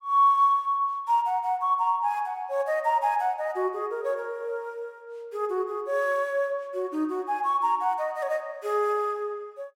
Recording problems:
none

